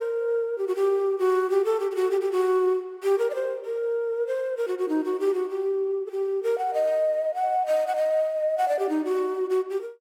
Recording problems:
none

